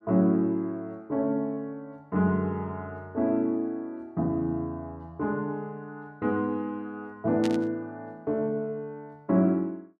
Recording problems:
burst of static; at 7.5 s; peak -4 dB vs average level

